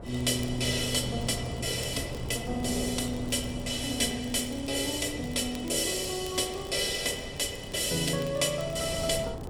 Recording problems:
wind on the microphone; below 430 Hz, SNR 11 dB
crackle; vinyl, SNR 23 dB

